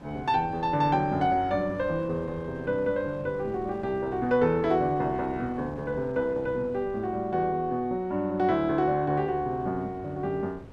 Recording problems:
wind on the microphone; below 510 Hz, SNR 19 dB

